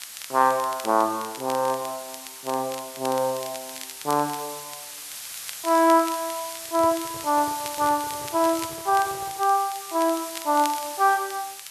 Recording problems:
background hiss; slope +4 dB per octave, SNR 11 dB
crackling; vinyl, SNR 17 dB
microphone handling noise; from 6.5 to 9.5 s; peak -11 dB vs average level

